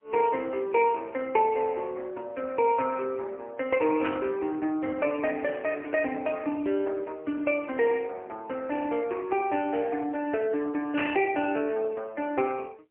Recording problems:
phone line; 260 Hz to 3.1 kHz, AMR-NB, then MP3
burst of static; at 4 s and at 11 s; peak -1 dB vs average level

